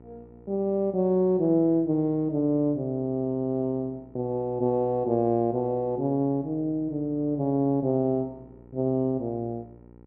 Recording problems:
electrical hum; 60 Hz, harmonics up to 1 kHz, SNR 25 dB

